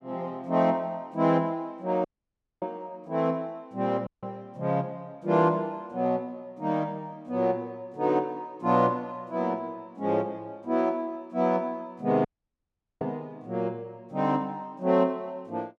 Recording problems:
dropout; at 2 s for 0.5 s, at 4 s and at 12 s for 1 s

